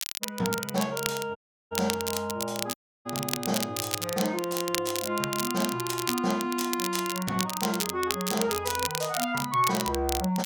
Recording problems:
crackling; vinyl, SNR 3 dB
dropout; at 1.5 s and at 2.5 s

